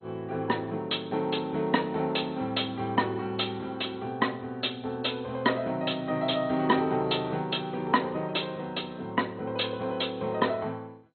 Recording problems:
lossy compression; MP2, log-spectral distance 6 dB, nothing above 4.2 kHz

